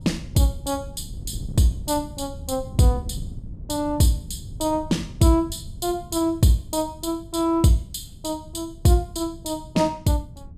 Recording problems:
wind on the microphone; below 140 Hz, SNR 15 dB

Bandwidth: 14.5 kHz